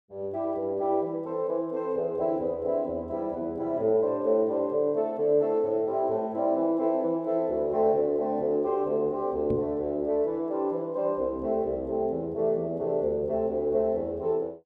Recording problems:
knock on the microphone; at 9.5 s; peak -2 dB vs average level

